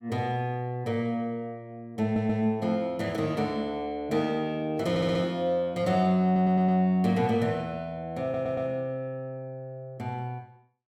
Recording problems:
stutter; 4 times, first at 2 s

